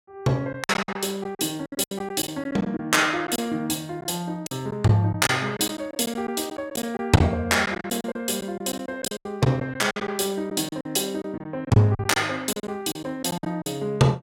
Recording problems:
lost packets; 12% of the sound replaced, filled with silence

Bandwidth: 16.5 kHz